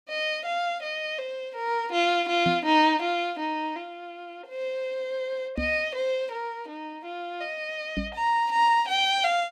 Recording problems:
knock on the microphone; at 2.5 s, at 5.5 s and at 8 s; peak +1 dB vs average level

